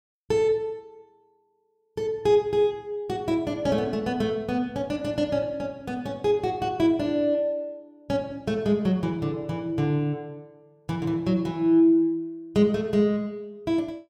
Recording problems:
none

